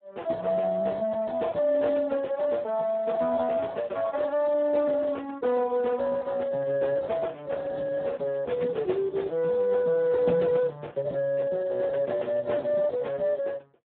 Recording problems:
telephone audio; 190 Hz to 3.4 kHz, Speex

